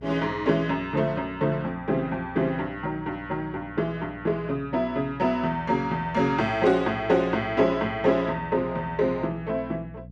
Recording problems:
electrical hum; 60 Hz, harmonics up to 480 Hz, SNR 18 dB

